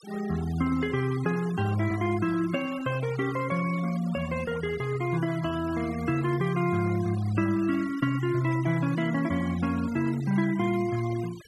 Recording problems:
denoising artefacts; signal-to-artefact ratio 18 dB

